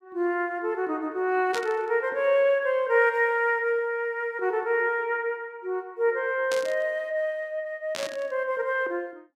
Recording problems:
static burst; at 1.5 s, at 6.5 s and at 8 s; peak -4 dB vs average level

